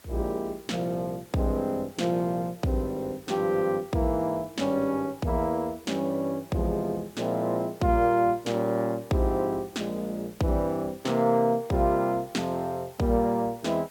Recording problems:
hiss; slope -2 dB per octave, SNR 25 dB

